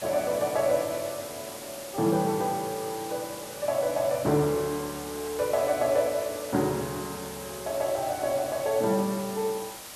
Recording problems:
hiss; slope -1 dB per octave, SNR 11 dB

